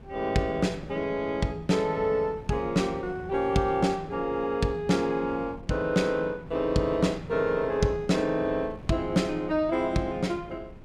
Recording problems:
wind noise; below 290 Hz, SNR 18 dB

